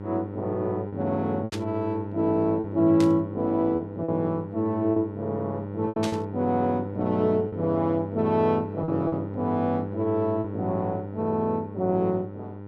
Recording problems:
hum; 50 Hz, harmonics up to 1 kHz, SNR 9 dB
packet loss; 4% of the sound replaced, filled with repeated pitch periods
burst of static; at 1.5 s, at 3 s and at 6 s; peak -3 dB vs average level

